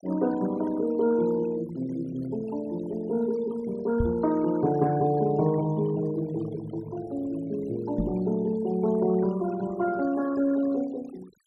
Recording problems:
denoising artefacts; signal-to-artefact ratio 19 dB
knock on the microphone; at 4 s and at 8 s; peak +3 dB vs average level

